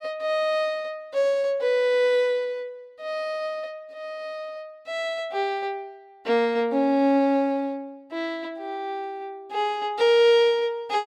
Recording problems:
none

